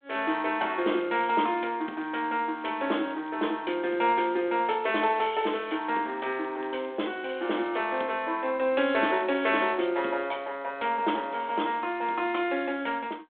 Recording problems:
phone line; 240 Hz to 3.6 kHz, G.726
crackle; from 2 to 4 s and from 4.5 to 7 s; loose cable, SNR 30 dB

